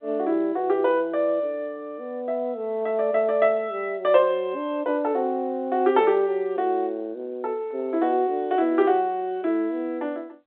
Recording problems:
phone line; 260 Hz to 3.6 kHz, G.711

